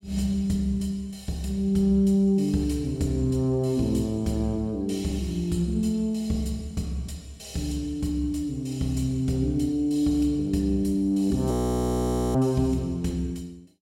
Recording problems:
frozen audio; at 12 s for 1 s

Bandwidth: 16 kHz